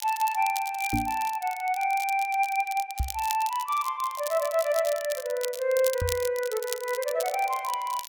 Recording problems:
crackling; vinyl, SNR 11 dB
microphone bump; at 1 s, at 3 s and at 6 s; peak +2 dB vs average level

